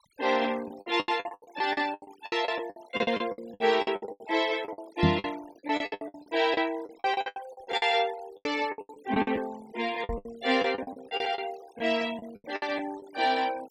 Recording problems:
noise reduction artefacts; signal-to-artefact ratio 19 dB
packet loss; 21% of the sound replaced, filled with the last packet
microphone bump; at 5 s and at 10 s; peak +9 dB vs average level

